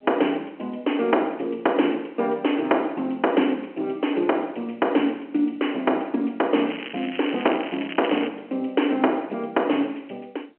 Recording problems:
telephone audio; 280 Hz to 3.2 kHz, G.711
crackle; from 6.5 to 8.5 s; loose cable, SNR 11 dB

